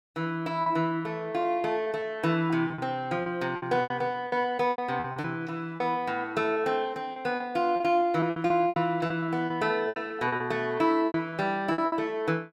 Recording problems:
packet loss; 13% of the sound replaced, filled with repeated pitch periods

